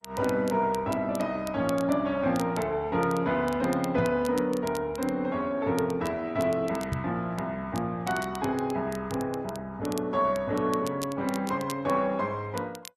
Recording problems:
lossy compression; MP2, then Opus, log-spectral distance 2 dB
crackle; vinyl, SNR 18 dB
microphone bump; at 4 s and at 7 s; peak +2 dB vs average level

